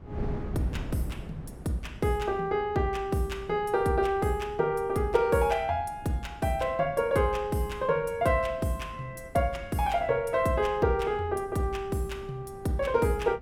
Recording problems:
wind noise; below 230 Hz, SNR 16 dB

